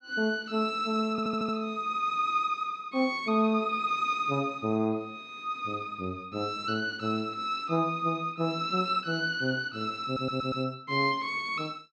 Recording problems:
stutter; at 1 s and at 10 s

